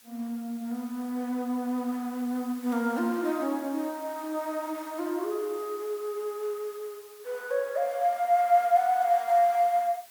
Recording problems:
hiss; slope +1 dB per octave, SNR 21 dB

